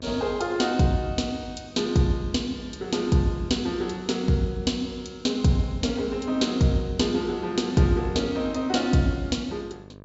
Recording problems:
low-pass filter; nothing above 8 kHz
electrical hum; 50 Hz, harmonics up to 1.6 kHz, SNR 24 dB

